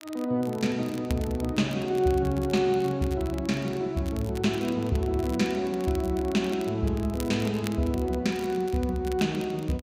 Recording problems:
crackle; vinyl, SNR 19 dB

